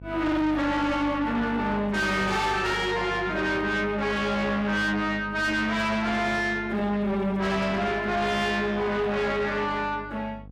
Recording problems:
distorted audio; soft clipping, signal-to-distortion ratio 7 dB
electrical hum; 50 Hz, harmonics up to 550 Hz, SNR 18 dB

